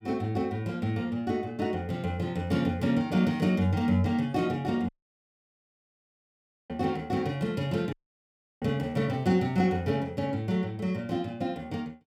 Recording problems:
dropout; at 5 s for 2 s and at 8 s for 0.5 s

